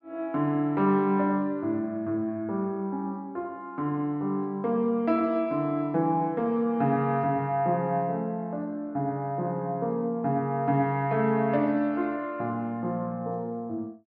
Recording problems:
none

